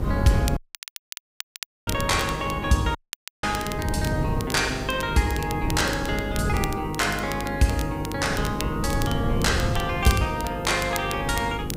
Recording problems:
hum; 50 Hz, harmonics up to 500 Hz, SNR 9 dB
hiss; slope +2 dB per octave, SNR 29 dB
wind noise; below 190 Hz, SNR 6 dB
crackling; vinyl, SNR 12 dB
audio cutting out; at 0.5 s for 1.5 s and at 3 s

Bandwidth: 15.5 kHz